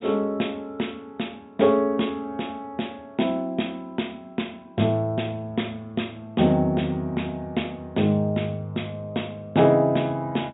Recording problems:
low-pass filter; nothing above 4 kHz

